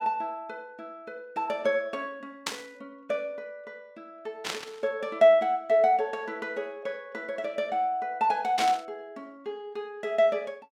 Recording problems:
static burst; at 2.5 s, at 4.5 s and at 8.5 s; peak +2 dB vs average level

